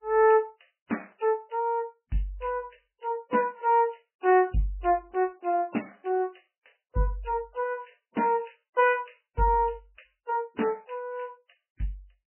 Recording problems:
lossy codec; MP3, log-spectral distance 5 dB, nothing above 2.4 kHz

